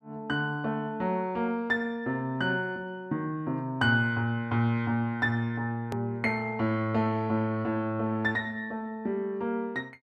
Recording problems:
hard cut with a click; at 6 s

